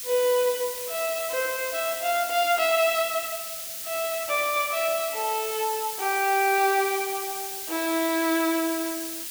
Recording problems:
background hiss; SNR 6 dB

